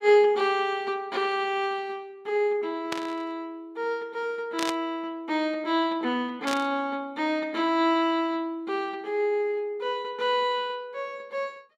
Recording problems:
burst of static; at 3 s, at 4.5 s and at 6.5 s; peak 0 dB vs average level

